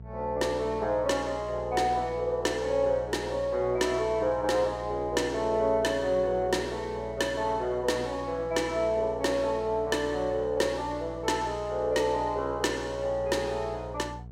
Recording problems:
hum; 60 Hz, harmonics up to 480 Hz, SNR 16 dB

